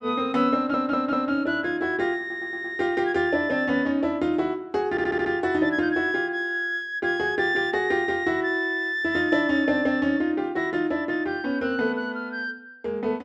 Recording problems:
stutter; at 0.5 s, at 2 s and at 5 s

